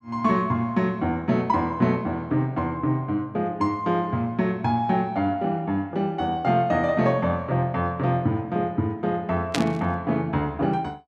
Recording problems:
static burst; at 9.5 s; peak +3 dB vs average level

